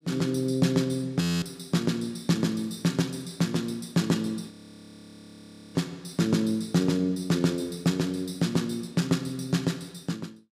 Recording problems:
audio freezing; at 1 s and at 4.5 s for 1 s

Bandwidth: 15.5 kHz